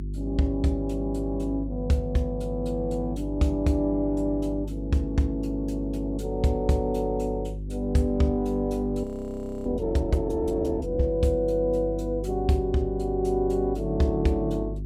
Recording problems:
electrical hum; 50 Hz, harmonics up to 400 Hz, SNR 8 dB
audio freezing; at 9 s for 0.5 s

